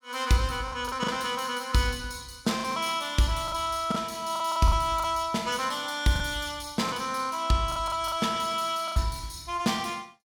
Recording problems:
packet loss; 7% of the sound replaced, filled with the last packet

